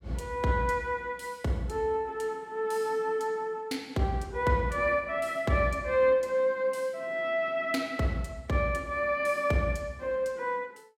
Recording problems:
none

